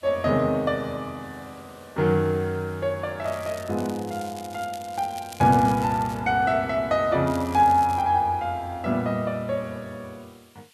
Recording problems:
background hiss; SNR 30 dB
crackling; from 3 to 6 s and at 7.5 s; loose cable, SNR 20 dB

